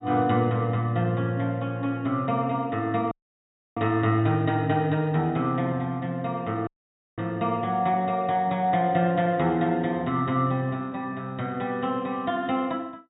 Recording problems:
low-pass filter; nothing above 4 kHz
audio cutting out; at 3 s for 0.5 s and at 6.5 s for 0.5 s

